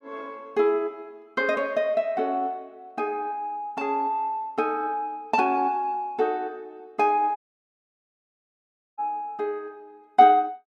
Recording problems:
dropout; at 7.5 s for 1.5 s

